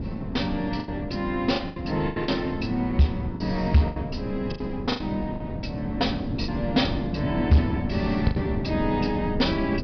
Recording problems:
treble cut off; nothing above 5.5 kHz
distorted audio; soft clipping, signal-to-distortion ratio 11 dB
rumble; below 130 Hz, SNR 16 dB
wind noise; below 270 Hz, SNR 6 dB
lost packets; 8% of the sound replaced, filled with the last packet

